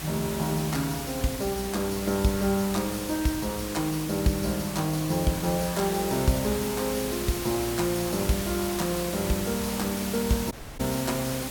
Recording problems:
hum; 60 Hz, harmonics up to 360 Hz, SNR 18 dB
hiss; slope -2 dB per octave, SNR 6 dB
audio cutting out; at 11 s

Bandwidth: 18 kHz